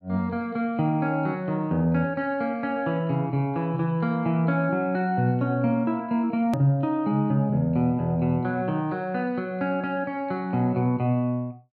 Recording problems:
hard cut with a click; at 6.5 s

